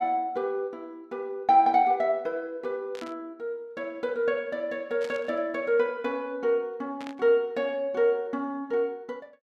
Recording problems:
static burst; at 3 s, at 5 s and at 7 s; peak -11 dB vs average level

